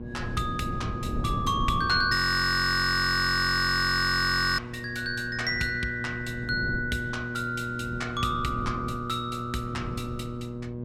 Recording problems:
hum; 60 Hz, harmonics up to 960 Hz, SNR 11 dB
wind noise; below 220 Hz, SNR 11 dB
audio freezing; at 2 s for 2.5 s

